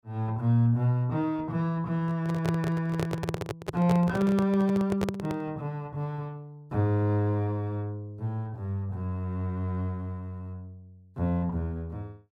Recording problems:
handling noise; from 2 to 5.5 s; peak +1 dB vs average level

